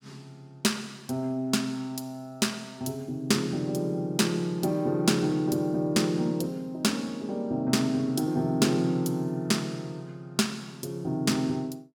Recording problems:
none

